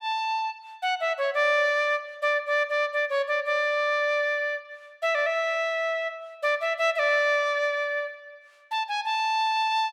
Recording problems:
none

